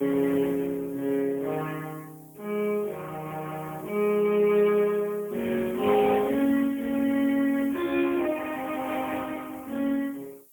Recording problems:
phone line; 240 Hz to 3.5 kHz, AMR-NB, then MP3
background hiss; SNR 23 dB

